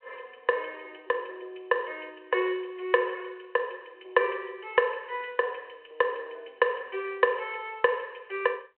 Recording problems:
phone line; 320 Hz to 3.2 kHz, G.726

